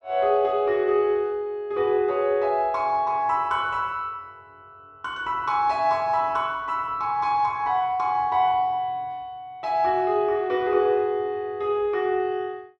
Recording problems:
none

